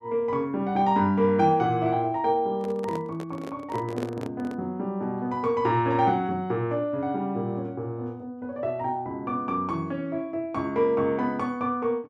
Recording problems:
handling noise; from 2.5 to 4.5 s; peak -4 dB vs average level

